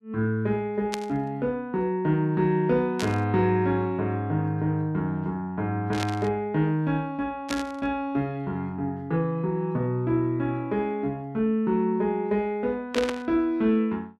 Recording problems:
burst of static; 5 times, first at 1 s; peak +1 dB vs average level

